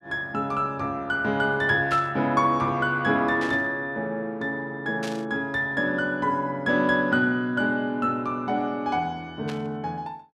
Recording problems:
burst of static; 4 times, first at 2 s; peak -6 dB vs average level

